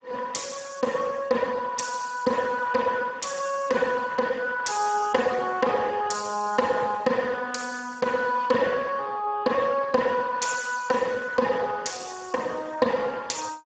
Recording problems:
lossy codec; Speex, log-spectral distance 5 dB, nothing above 7.6 kHz

